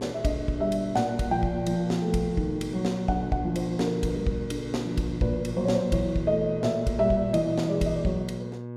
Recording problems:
hum; 60 Hz, harmonics up to 1.1 kHz, SNR 11 dB

